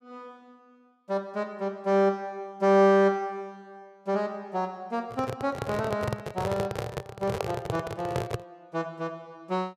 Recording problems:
handling noise; from 5 to 8.5 s; peak +1 dB vs average level

